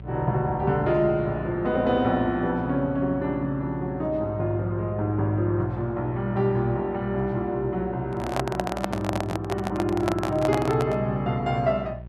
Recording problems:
hum; 60 Hz, harmonics up to 600 Hz, SNR 15 dB
handling noise; from 8 to 11 s; peak +2 dB vs average level

